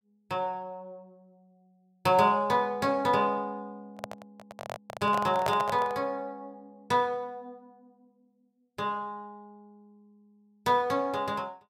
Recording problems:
handling noise; from 4 to 6 s; peak +3 dB vs average level

